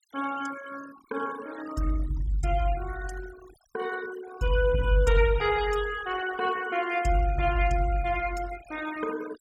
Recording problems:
denoising artefacts; signal-to-artefact ratio 16 dB

